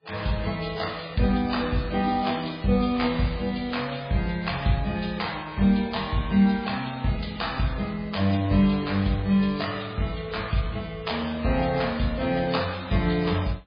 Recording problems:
codec artefacts; AAC, then MP3, log-spectral distance 6 dB, nothing above 4.1 kHz
crackling; from 1.5 to 4 s; loose cable, SNR 24 dB

